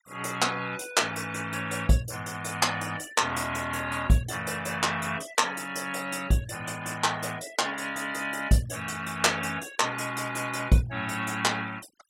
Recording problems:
noise reduction artefacts; signal-to-artefact ratio 20 dB

